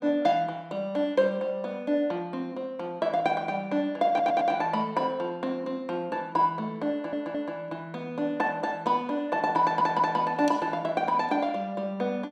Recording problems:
stutter; at 4 s, at 7 s and at 9.5 s

